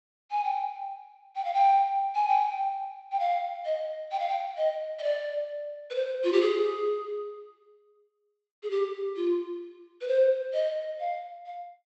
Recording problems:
treble cut off; nothing above 7.9 kHz

